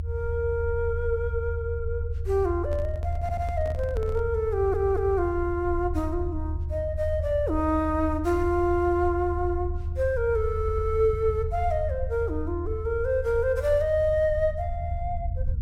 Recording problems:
rumble; below 80 Hz, SNR 5 dB
microphone handling noise; from 2.5 to 4 s; peak -11 dB vs average level
audio stuttering; at 3 s, at 4.5 s and at 11 s

